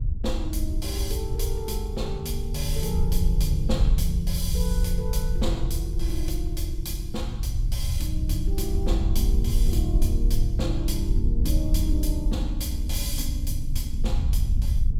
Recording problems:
wind on the microphone; below 68 Hz, SNR -4 dB

